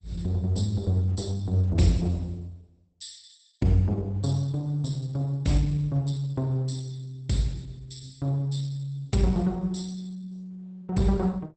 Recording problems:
lossy codec; Opus, log-spectral distance 3 dB, nothing above 8.2 kHz

